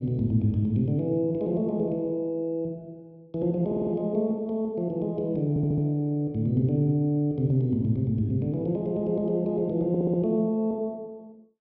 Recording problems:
treble cut off; nothing above 5.5 kHz
audio stuttering; at 3.5 s, at 5.5 s and at 10 s

